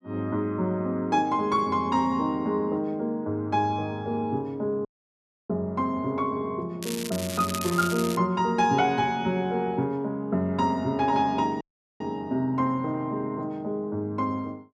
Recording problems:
audio cutting out; at 5 s for 0.5 s and at 12 s
crackle; from 7 to 8 s; loose cable, SNR 9 dB

